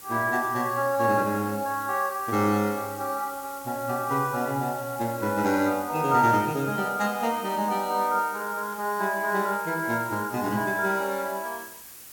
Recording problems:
background hiss; slope 0 dB per octave, SNR 16 dB

